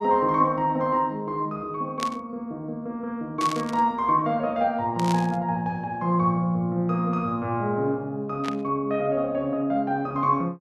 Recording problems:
static burst; 4 times, first at 2 s; peak -3 dB vs average level

